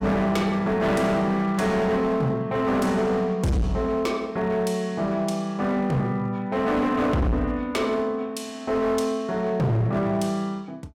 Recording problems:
distortion; hard clipping, signal-to-distortion ratio 8 dB

